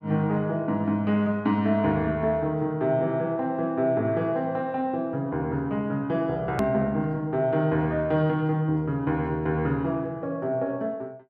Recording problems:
edit click; at 6.5 s

